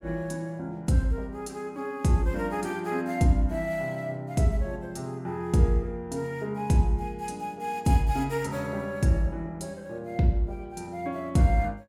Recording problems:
none

